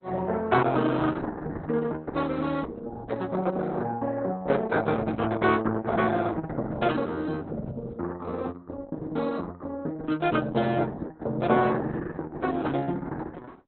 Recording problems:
codec artefacts; Opus, log-spectral distance 4 dB, nothing above 4 kHz

